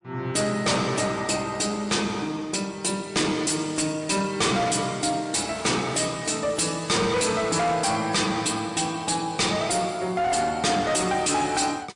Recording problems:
lossy compression; MP3, log-spectral distance 7 dB, nothing above 10.1 kHz
distortion; hard clipping, signal-to-distortion ratio 6 dB
crackling; from 5 to 8 s; loose cable, SNR 22 dB

